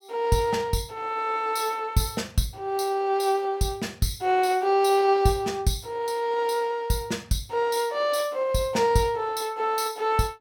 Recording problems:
none

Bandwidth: 17 kHz